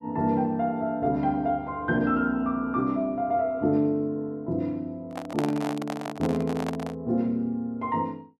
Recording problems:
handling noise; from 5 to 7 s; peak 0 dB vs average level

